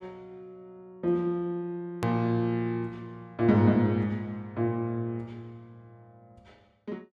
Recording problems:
edit click; at 2 s

